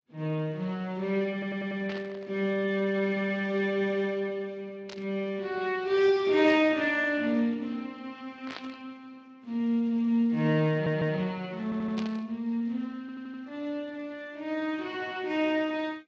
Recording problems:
lossy compression; Speex, then Vorbis, log-spectral distance 3 dB
stutter; 4 times, first at 1.5 s
static burst; 5 times, first at 2 s; peak -6 dB vs average level

